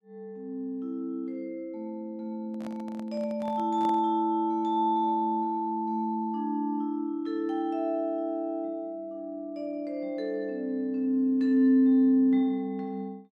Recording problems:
handling noise; from 2.5 to 4 s; peak -10 dB vs average level

